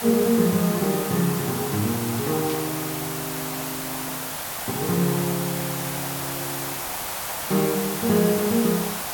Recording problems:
hiss; SNR 3 dB
static burst; at 2.5 s; peak -8 dB vs average level

